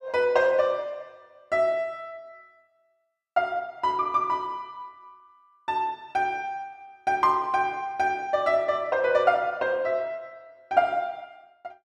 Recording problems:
none

